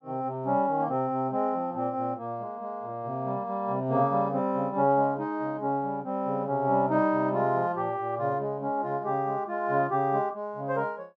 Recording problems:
none

